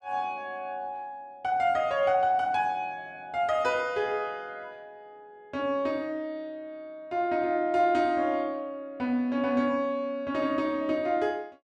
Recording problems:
none

